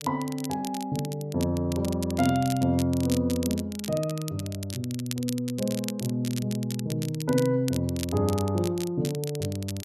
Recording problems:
crackling; vinyl, SNR 12 dB

